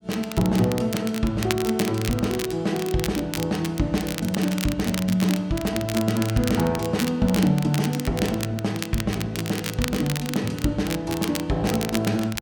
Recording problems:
crackle; vinyl, SNR 9 dB

